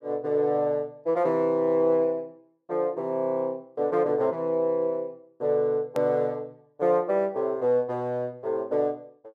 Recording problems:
edit click; at 6 s

